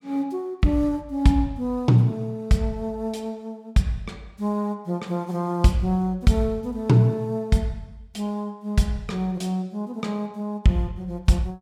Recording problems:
none

